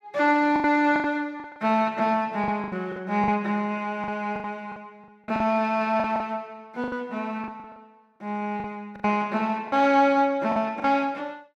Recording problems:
packet loss; 11% of the sound replaced, filled with the last packet

